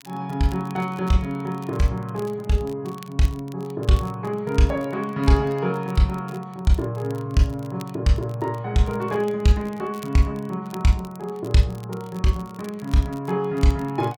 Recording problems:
crackle; vinyl, SNR 26 dB

